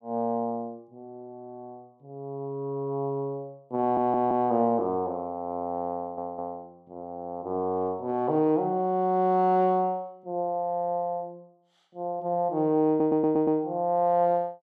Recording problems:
stutter; at 4 s, at 6 s and at 13 s

